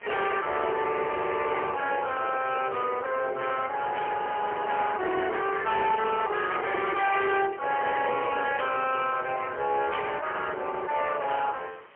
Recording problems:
phone line; 340 Hz to 3.3 kHz, AMR-NB, then MP3
distortion; hard clipping, uneven, signal-to-distortion ratio 11 dB
hiss; SNR 24 dB
burst of static; 4 times, first at 4 s; peak -5 dB vs average level

